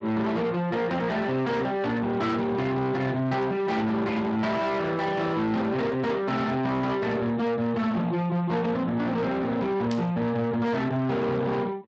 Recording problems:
lossy compression; Speex, log-spectral distance 3 dB
distortion; soft clipping, signal-to-distortion ratio 8 dB
burst of static; at 10 s; peak -9 dB vs average level

